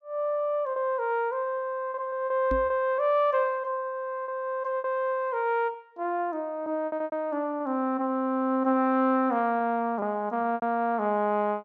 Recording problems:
lost packets; 6% of the sound replaced, filled with repeated pitch periods
microphone thump; at 2.5 s; peak -2 dB vs average level

